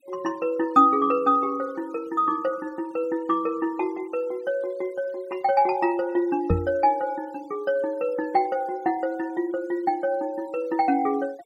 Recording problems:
noise reduction artefacts; signal-to-artefact ratio 28 dB
knock on the microphone; at 6.5 s; peak +5 dB vs average level

